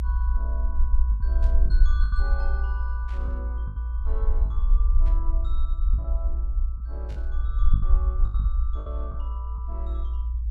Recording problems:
low-frequency rumble; below 58 Hz, SNR -16 dB
lost packets; 7% of the sound replaced, filled with the last packet
burst of static; 4 times, first at 1.5 s; peak -5 dB vs average level

